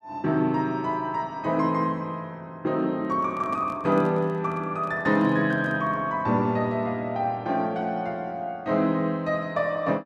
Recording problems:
microphone handling noise; from 3 to 6 s; peak -9 dB vs average level

